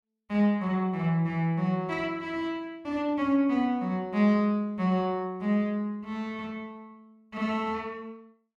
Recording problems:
none

